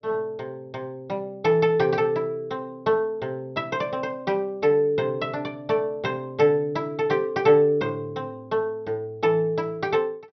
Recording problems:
low-pass filter; nothing above 5.9 kHz

